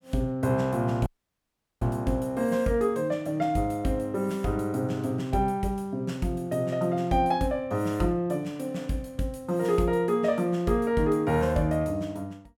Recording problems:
audio cutting out; at 1 s for 1 s

